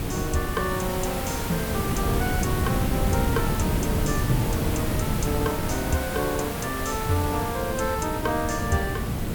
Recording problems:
hiss; slope -4 dB per octave, SNR 4 dB
wind noise; below 230 Hz, SNR 0 dB

